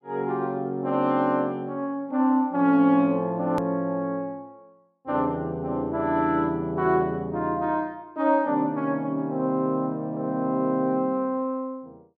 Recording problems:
edit click; at 3.5 s

